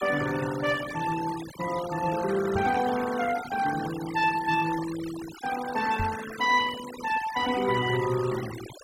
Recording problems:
denoising artefacts; signal-to-artefact ratio 12 dB
microphone bump; at 2.5 s and at 6 s; peak -2 dB vs average level

